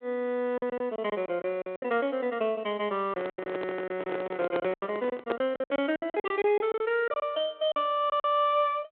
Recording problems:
phone line; 220 Hz to 3.5 kHz, G.726
packet loss; 13% of the sound replaced, filled with silence
microphone handling noise; from 3 to 5.5 s; peak +2 dB vs average level

